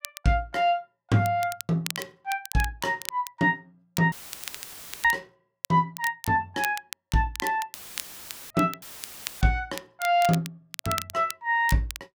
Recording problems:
crackling; vinyl, SNR 12 dB
dropout; at 4 s for 1 s, at 7.5 s for 1 s and at 9 s for 0.5 s; filled with static

